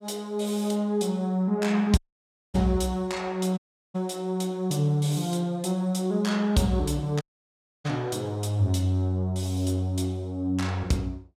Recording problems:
dropout; at 2 s for 0.5 s, at 3.5 s and at 7 s for 0.5 s

